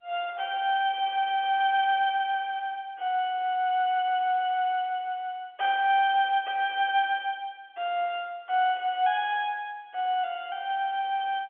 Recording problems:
phone line; 340 Hz to 3.5 kHz, G.711

